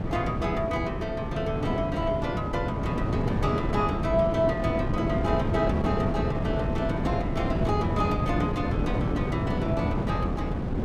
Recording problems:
wind on the microphone; below 340 Hz, SNR -1 dB

